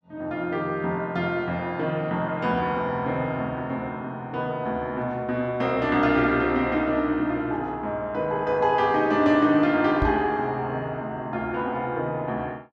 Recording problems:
microphone thump; at 10 s; peak +1 dB vs average level

